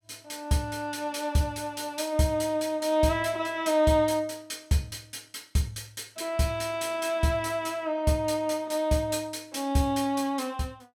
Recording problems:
none

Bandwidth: 17.5 kHz